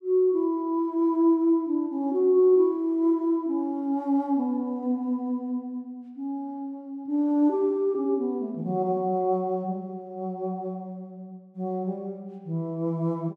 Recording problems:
none

